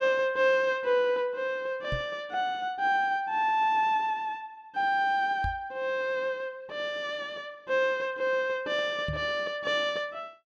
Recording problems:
microphone bump; at 2 s, at 5.5 s and at 9 s; peak -2 dB vs average level

